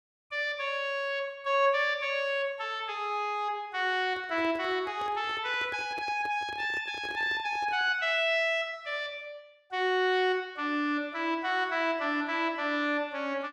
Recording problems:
microphone handling noise; from 4 to 8 s; peak -10 dB vs average level

